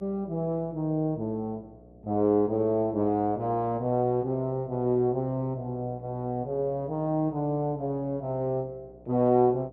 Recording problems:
mains hum; 60 Hz, harmonics up to 720 Hz, SNR 24 dB

